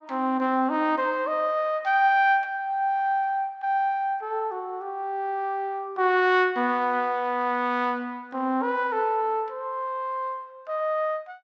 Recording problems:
none

